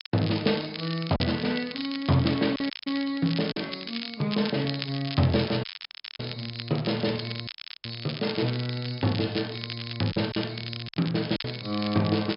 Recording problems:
treble cut off; nothing above 5.2 kHz
lossy codec; Speex, log-spectral distance 4 dB
crackling; vinyl, SNR 9 dB
packet loss; 3% of the sound replaced, filled with silence
dropout; at 2.5 s, at 5.5 s for 0.5 s and at 7.5 s

